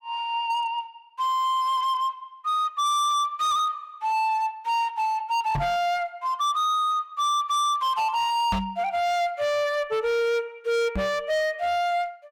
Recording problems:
distortion; hard clipping, signal-to-distortion ratio 7 dB
knock on the microphone; at 5.5 s, at 8.5 s and at 11 s; peak +1 dB vs average level

